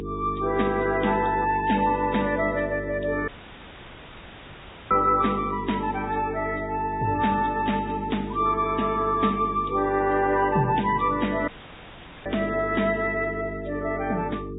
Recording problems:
treble missing; nothing above 3.8 kHz
codec artefacts; Vorbis, log-spectral distance 3 dB
electrical hum; 50 Hz, harmonics up to 450 Hz, SNR 10 dB
audio cutting out; at 3.5 s for 1.5 s and at 11 s for 1 s; filled with static

